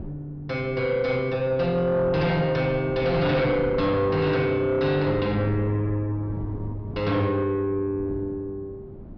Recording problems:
treble missing; nothing above 5.5 kHz
distortion; soft clipping, signal-to-distortion ratio 11 dB
wind noise; below 280 Hz, SNR 15 dB

